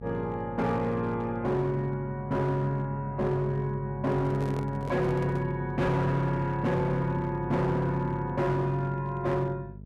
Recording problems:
distorted audio; hard clipping, signal-to-distortion ratio 11 dB
electrical hum; 50 Hz, harmonics up to 450 Hz, SNR 13 dB
microphone handling noise; from 4 to 5.5 s; peak -7 dB vs average level

